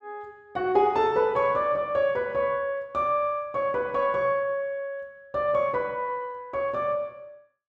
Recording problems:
none

